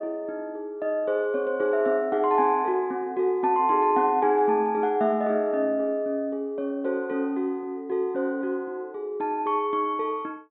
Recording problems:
treble cut off; nothing above 4 kHz

